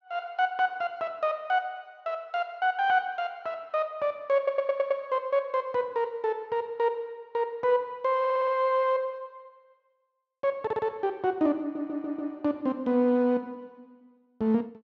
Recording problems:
audio stuttering; 4 times, first at 4.5 s

